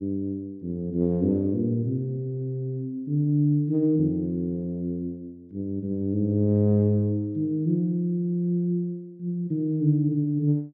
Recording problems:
none

